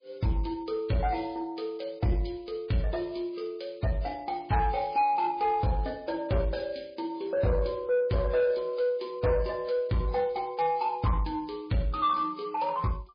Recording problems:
lossy compression; MP3, log-spectral distance 4 dB
distortion; soft clipping, signal-to-distortion ratio 11 dB

